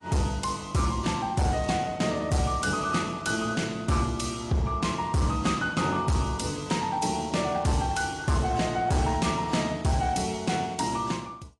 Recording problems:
lossy codec; AAC, log-spectral distance 4 dB, nothing above 10.1 kHz
distortion; hard clipping, signal-to-distortion ratio 11 dB

